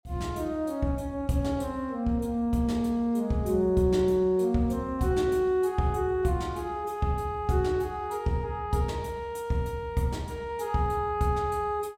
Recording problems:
none

